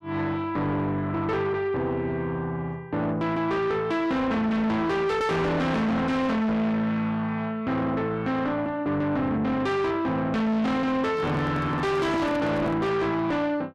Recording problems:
distorted audio; soft clipping, signal-to-distortion ratio 6 dB
microphone handling noise; from 11 to 13 s; peak +2 dB vs average level

